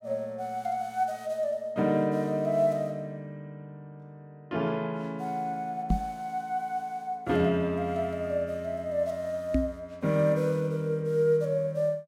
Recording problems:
microphone thump; at 6 s and at 9.5 s; peak +6 dB vs average level

